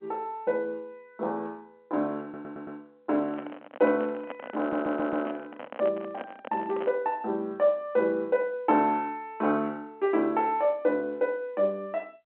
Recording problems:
phone line; 240 Hz to 3.6 kHz, G.711
stutter; at 2 s and at 4.5 s
handling noise; from 3 to 7 s; peak -5 dB vs average level

